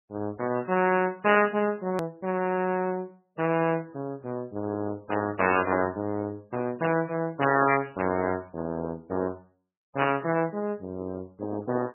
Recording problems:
lossy compression; AAC, then MP3, log-spectral distance 3 dB, nothing above 2.7 kHz
hard cut with a click; at 2 s

